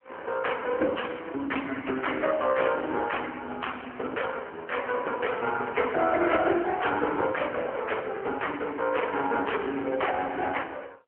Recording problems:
phone line; 220 Hz to 3.1 kHz, AMR-NB

